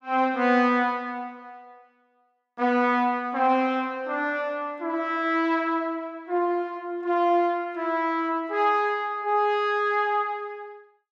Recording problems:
none

